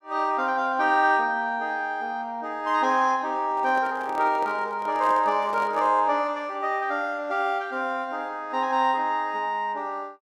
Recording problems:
handling noise; from 3.5 to 6 s; peak -8 dB vs average level

